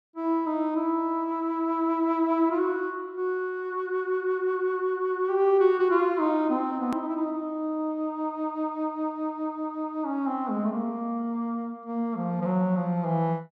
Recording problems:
hard cut with a click; at 7 s

